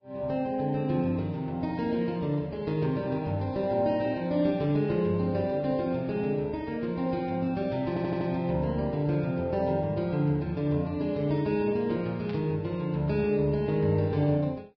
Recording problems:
lossy codec; Vorbis, log-spectral distance 2 dB
audio stuttering; at 8 s
static burst; at 12 s; peak -14 dB vs average level

